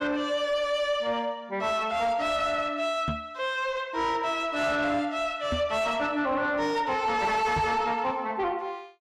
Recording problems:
distorted audio; soft clipping, signal-to-distortion ratio 11 dB
microphone thump; at 3 s, at 5.5 s and at 7.5 s; peak +1 dB vs average level

